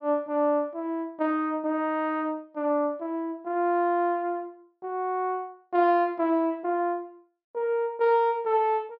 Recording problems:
treble missing; nothing above 5.5 kHz

